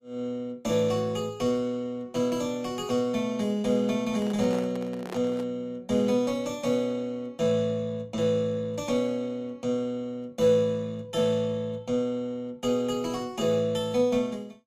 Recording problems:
lossy codec; Vorbis, log-spectral distance 2 dB, nothing above 14.3 kHz
handling noise; from 4 to 5.5 s; peak -5 dB vs average level

